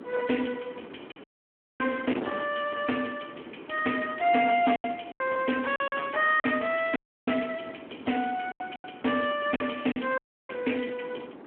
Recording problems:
phone line; 280 Hz to 3.2 kHz, Speex
distortion; hard clipping, signal-to-distortion ratio 14 dB
wind on the microphone; below 840 Hz, SNR 15 dB
lost packets; 5% of the sound replaced, filled with silence
audio cutting out; at 1 s for 0.5 s, at 7 s and at 10 s

